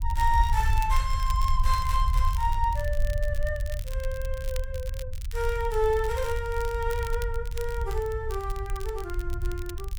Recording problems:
low-frequency rumble; below 62 Hz, SNR 1 dB
crackling; vinyl, SNR 16 dB

